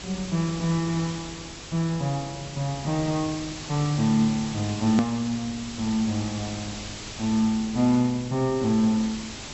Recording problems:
low-pass filter; nothing above 7.8 kHz
hum; 50 Hz, harmonics up to 400 Hz, SNR 23 dB
background hiss; slope -1 dB per octave, SNR 11 dB
edit click; at 5 s

